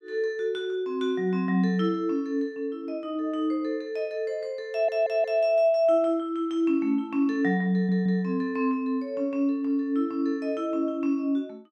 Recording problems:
stutter; at 4.5 s and at 7.5 s

